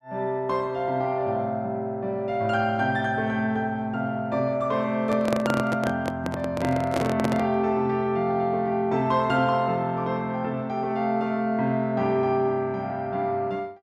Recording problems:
handling noise; from 5 to 7.5 s; peak +2 dB vs average level

